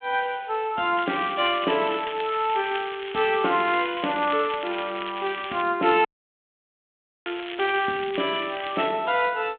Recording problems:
telephone audio; 220 Hz to 3.5 kHz, G.726
crackle; from 1 to 5.5 s and from 7.5 to 9 s; loose cable, SNR 12 dB
audio cutting out; at 6 s for 1 s

